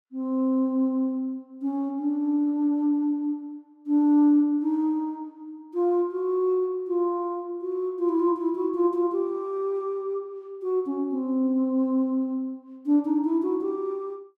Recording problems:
none

